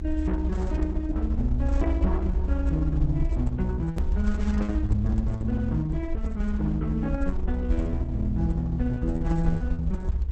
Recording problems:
codec artefacts; Opus, log-spectral distance 2 dB, nothing above 13.1 kHz
hum; 50 Hz, harmonics up to 450 Hz, SNR 18 dB
rumble; below 68 Hz, SNR 0 dB
edit click; at 4 s

